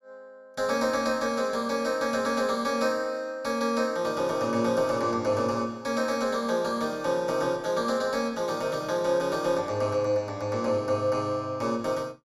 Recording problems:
none

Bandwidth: 16.5 kHz